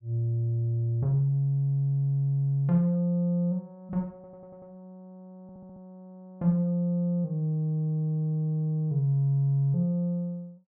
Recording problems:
stutter; at 4 s and at 5.5 s

